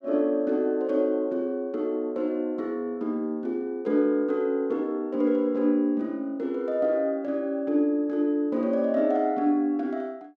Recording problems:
none

